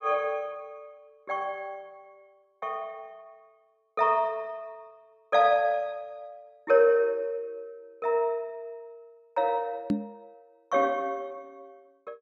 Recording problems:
microphone bump; at 10 s; peak +4 dB vs average level

